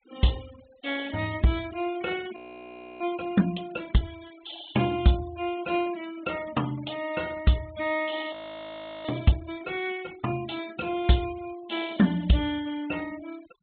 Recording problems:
treble missing; nothing above 4 kHz
denoising artefacts; signal-to-artefact ratio 18 dB
frozen audio; at 2.5 s for 0.5 s and at 8.5 s for 0.5 s

